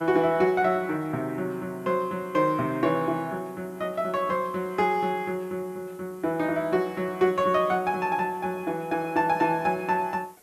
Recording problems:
hiss; SNR 28 dB

